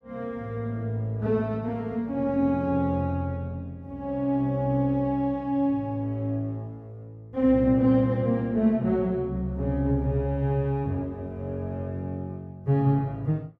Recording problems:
none

